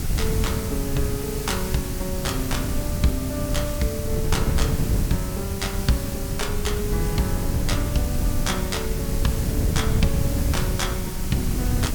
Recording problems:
hiss; slope 0 dB per octave, SNR 6 dB
wind on the microphone; below 140 Hz, SNR -1 dB

